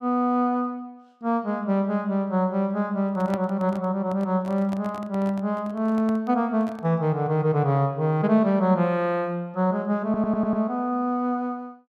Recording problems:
microphone handling noise; from 3 to 7 s; peak -7 dB vs average level
stutter; at 10 s

